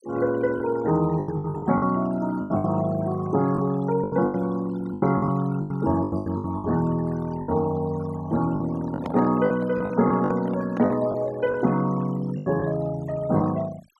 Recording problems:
noise reduction artefacts; signal-to-artefact ratio 18 dB
lost packets; 11% of the sound replaced, filled with the last packet
microphone handling noise; from 8.5 to 11 s; peak -4 dB vs average level

